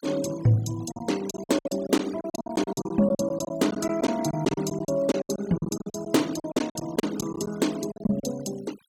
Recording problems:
noise reduction artefacts; signal-to-artefact ratio 17 dB
packet loss; 17% of the sound replaced, filled with silence

